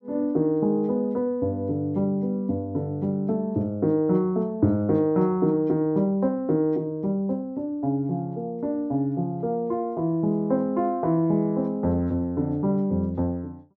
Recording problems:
none

